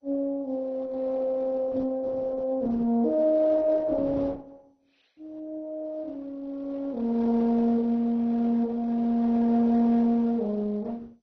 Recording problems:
lossy compression; Opus, then MP2, log-spectral distance 3 dB, nothing above 6 kHz

